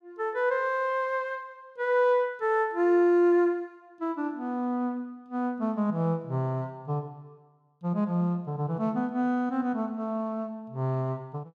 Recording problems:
none

